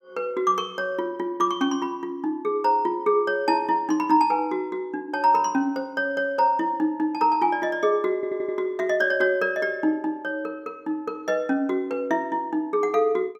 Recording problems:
audio stuttering; at 8 s

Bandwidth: 14 kHz